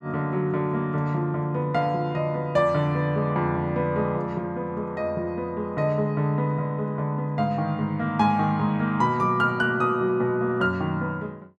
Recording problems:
none

